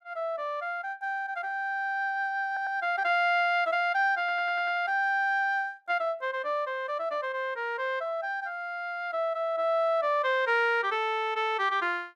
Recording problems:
audio stuttering; at 2.5 s and at 4 s

